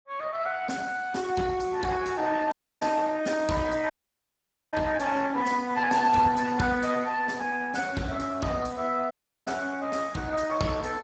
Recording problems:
lossy codec; Speex, log-spectral distance 5 dB, nothing above 7.8 kHz
audio cutting out; at 2.5 s, at 4 s for 1 s and at 9 s

